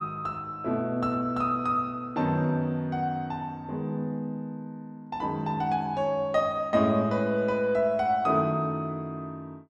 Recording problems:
none

